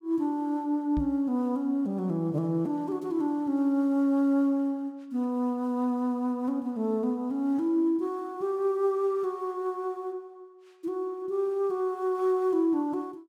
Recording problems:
microphone bump; at 1 s; peak -2 dB vs average level

